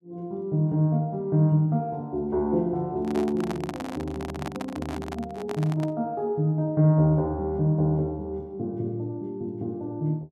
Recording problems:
handling noise; from 3 to 6 s; peak -3 dB vs average level

